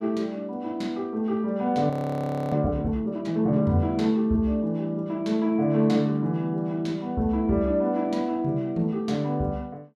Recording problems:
frozen audio; at 2 s for 0.5 s

